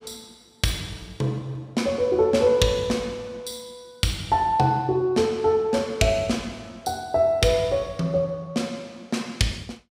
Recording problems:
none

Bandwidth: 15.5 kHz